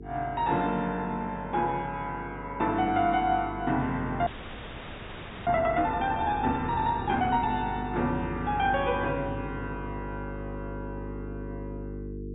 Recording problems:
treble missing; nothing above 4 kHz
electrical hum; 50 Hz, harmonics up to 450 Hz, SNR 11 dB
frozen audio; at 4.5 s for 1 s

